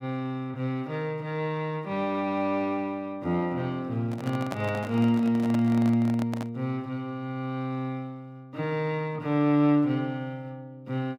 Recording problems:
microphone handling noise; from 4 to 6.5 s; peak -2 dB vs average level

